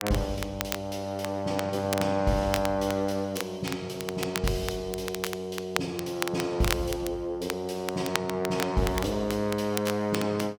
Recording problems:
crackling; vinyl, SNR 7 dB

